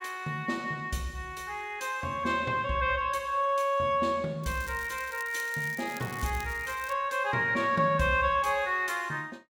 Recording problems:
crackle; from 4.5 to 7 s; loose cable, SNR 17 dB

